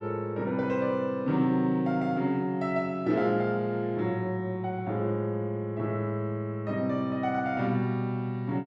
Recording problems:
none

